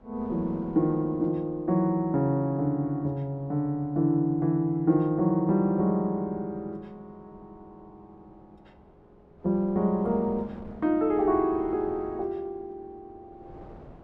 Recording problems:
wind noise; below 580 Hz, SNR 23 dB

